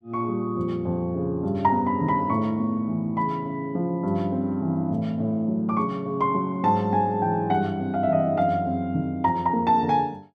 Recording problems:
none

